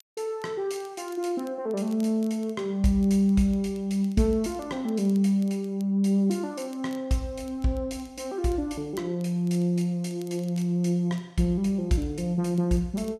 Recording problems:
crackle; vinyl, SNR 29 dB

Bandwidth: 14 kHz